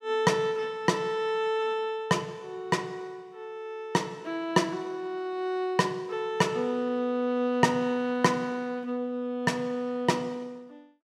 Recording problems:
none

